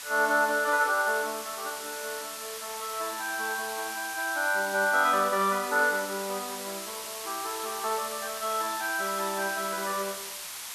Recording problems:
hiss; SNR 8 dB

